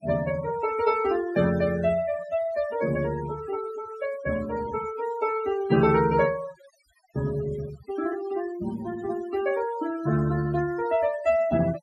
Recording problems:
denoising artefacts; signal-to-artefact ratio 15 dB

